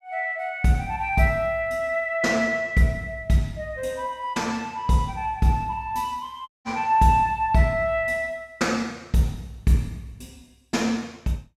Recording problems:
dropout; at 6.5 s

